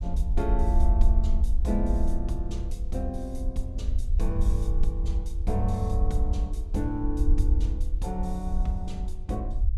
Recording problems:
low-frequency rumble; below 60 Hz, SNR -4 dB

